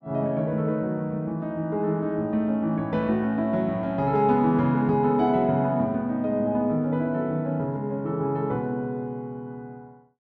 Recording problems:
none

